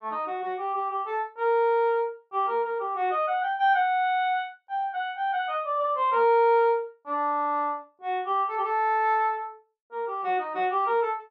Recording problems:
none

